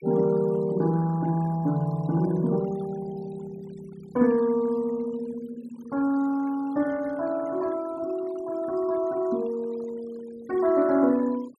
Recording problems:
denoising artefacts; signal-to-artefact ratio 22 dB

